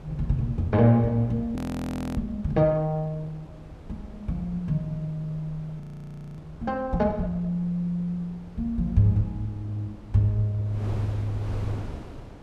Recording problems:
wind noise; below 330 Hz, SNR 16 dB
frozen audio; at 1.5 s for 0.5 s and at 6 s for 0.5 s

